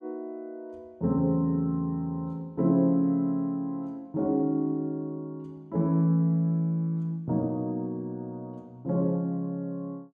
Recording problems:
none

